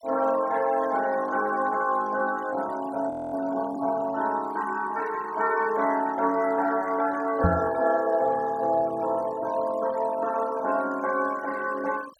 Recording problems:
denoising artefacts; signal-to-artefact ratio 19 dB
audio freezing; at 3 s
microphone thump; at 7.5 s; peak +6 dB vs average level

